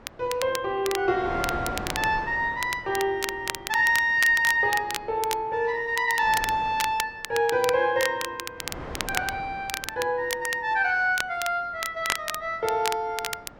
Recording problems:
wind noise; below 1 kHz, SNR 16 dB
crackling; vinyl, SNR 9 dB

